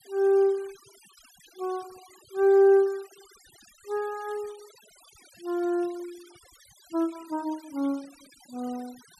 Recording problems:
noise reduction artefacts; signal-to-artefact ratio 25 dB

